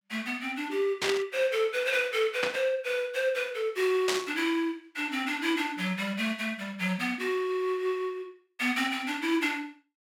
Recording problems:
static burst; at 1 s, at 2.5 s and at 4 s; peak +4 dB vs average level

